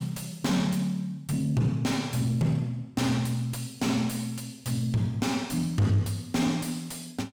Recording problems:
distorted audio; soft clipping, signal-to-distortion ratio 10 dB

